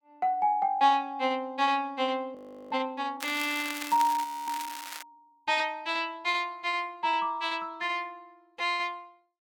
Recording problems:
audio freezing; at 2.5 s and at 4 s
crackle; from 3 to 5 s; loose cable, SNR 10 dB

